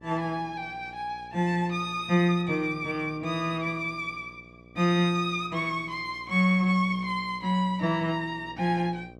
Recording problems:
hum; 60 Hz, harmonics up to 1.2 kHz, SNR 24 dB

